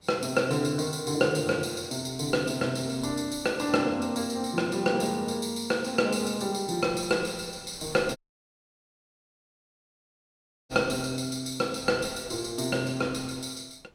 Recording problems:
wind noise; below 980 Hz, SNR 22 dB
dropout; at 8 s for 2.5 s

